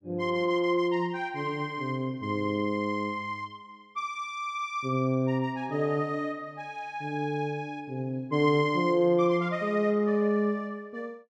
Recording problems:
none

